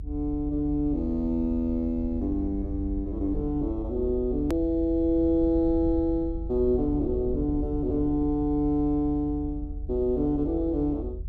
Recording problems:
low-frequency rumble; below 76 Hz, strongest tone 48 Hz, SNR 9 dB
click at an edit; at 4.5 s

